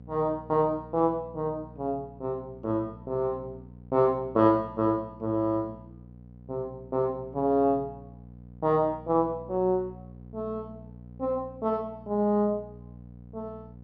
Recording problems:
electrical hum; 60 Hz, harmonics up to 780 Hz, SNR 19 dB

